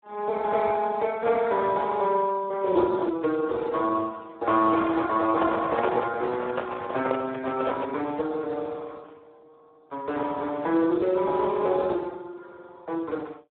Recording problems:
phone line; 260 Hz to 2 kHz, Speex
microphone handling noise; from 5 to 8 s; peak +1 dB vs average level

